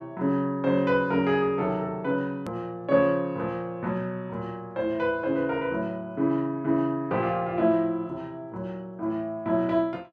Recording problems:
click at an edit; at 2.5 s

